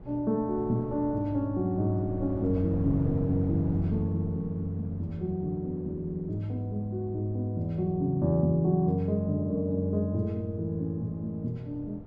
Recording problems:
wind on the microphone; below 280 Hz, SNR 15 dB

